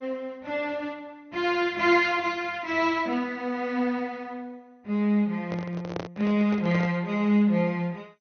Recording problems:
lossy compression; MP2, log-spectral distance 2 dB, nothing above 6.3 kHz
microphone handling noise; from 5.5 to 7 s; peak -3 dB vs average level

